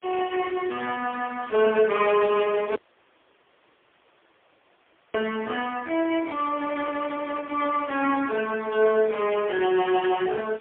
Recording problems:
phone line; 260 Hz to 2.9 kHz, AMR-NB, then MP3
hiss; SNR 27 dB
dropout; at 2.5 s for 2.5 s

